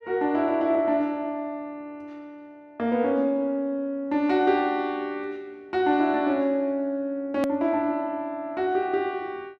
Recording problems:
hard cut with a click; at 7.5 s

